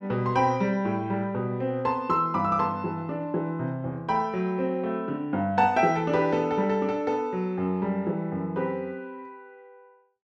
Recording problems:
none

